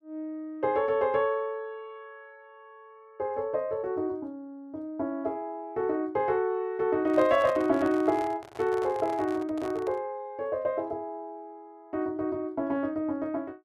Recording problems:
handling noise; from 7 to 10 s; peak -6 dB vs average level

